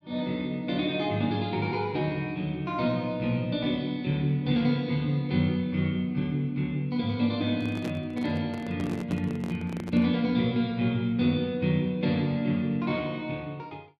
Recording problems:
handling noise; from 7.5 to 10 s; peak -5 dB vs average level

